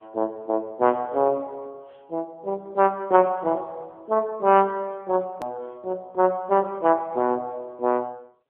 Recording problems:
phone line; 260 Hz to 2.4 kHz, AMR-NB
click at an edit; at 5.5 s

